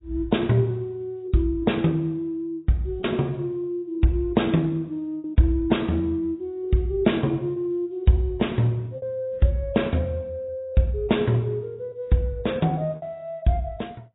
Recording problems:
lossy codec; AAC, log-spectral distance 2 dB, nothing above 3.8 kHz
lost packets; 2% of the sound replaced, filled with repeated pitch periods

